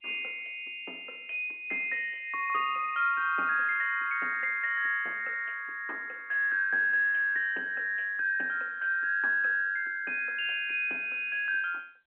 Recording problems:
telephone audio; 260 Hz to 3.5 kHz, G.711

